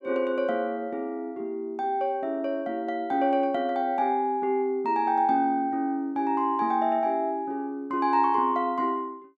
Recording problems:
none

